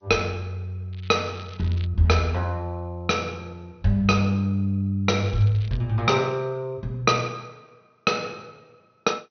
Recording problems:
treble missing; nothing above 6.2 kHz
lossy compression; G.722, log-spectral distance 2 dB
crackle; at 1 s and at 5 s; loose cable, SNR 23 dB

